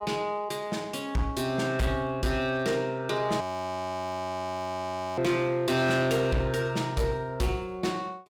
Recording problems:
distortion; hard clipping, signal-to-distortion ratio 11 dB
audio freezing; at 3.5 s for 2 s

